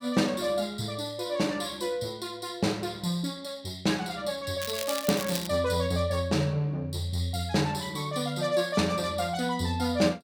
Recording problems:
crackle; at 4.5 s; loose cable, SNR 6 dB

